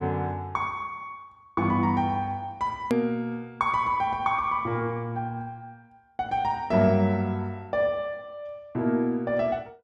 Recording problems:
edit click; at 3 s

